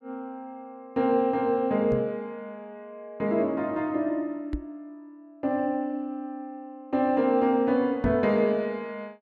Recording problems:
knock on the microphone; at 2 s, at 4.5 s and at 8 s; peak -2 dB vs average level

